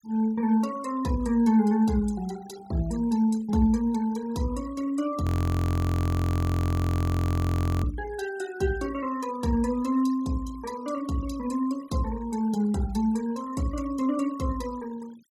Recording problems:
noise reduction artefacts; signal-to-artefact ratio 20 dB
frozen audio; at 5 s for 2.5 s

